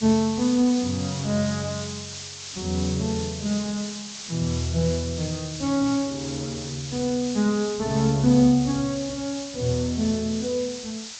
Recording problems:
treble missing; nothing above 8 kHz
background hiss; slope +3 dB per octave, SNR 10 dB

